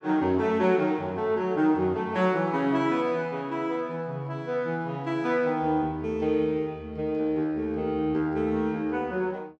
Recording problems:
none

